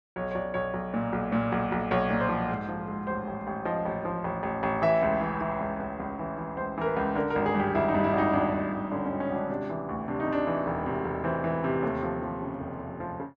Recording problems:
none

